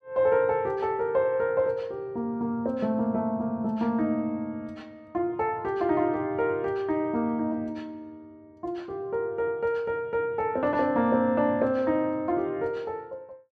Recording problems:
none

